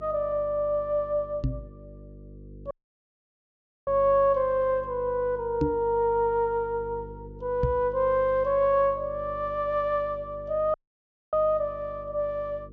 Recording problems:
low-pass filter; nothing above 8 kHz
hum; 50 Hz, harmonics up to 500 Hz, SNR 19 dB
knock on the microphone; at 1.5 s, at 5.5 s and at 7.5 s; peak +3 dB vs average level
dropout; at 2.5 s for 1 s and at 11 s for 0.5 s

